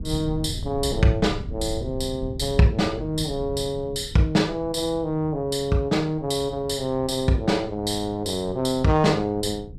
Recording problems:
low-frequency rumble; below 140 Hz, SNR 13 dB

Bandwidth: 14.5 kHz